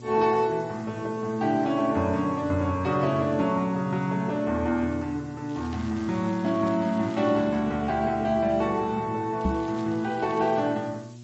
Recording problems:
lossy codec; G.722, then MP3, log-spectral distance 5 dB
hum; 60 Hz, harmonics up to 720 Hz, SNR 17 dB
background hiss; slope +3 dB per octave, SNR 30 dB
crackle; from 5.5 to 7.5 s and from 9.5 to 11 s; loose cable, SNR 26 dB
microphone bump; at 9.5 s; peak +3 dB vs average level

